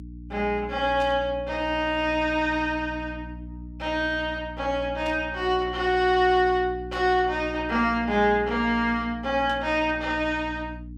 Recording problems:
hum; 60 Hz, harmonics up to 300 Hz, SNR 14 dB
static burst; 4 times, first at 1 s; peak -13 dB vs average level

